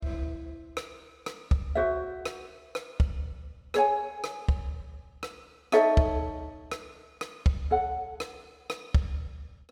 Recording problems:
none

